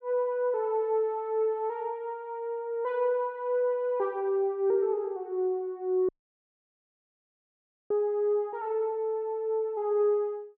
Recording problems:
audio cutting out; at 6 s for 2 s

